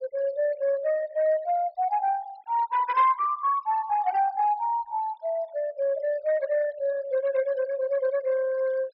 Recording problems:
treble missing; nothing above 5.5 kHz
denoising artefacts; signal-to-artefact ratio 23 dB

